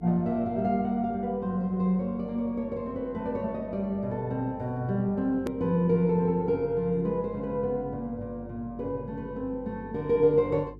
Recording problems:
hum; 50 Hz, harmonics up to 450 Hz, SNR 20 dB
click at an edit; at 5.5 s

